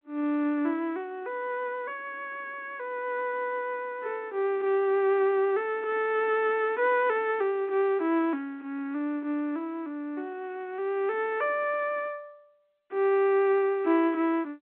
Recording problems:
phone line; 220 Hz to 3.4 kHz, G.711

